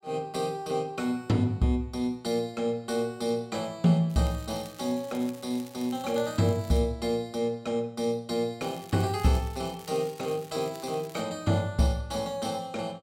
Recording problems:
crackling; from 4 to 7 s and from 8.5 to 11 s; loose cable, SNR 21 dB

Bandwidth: 16 kHz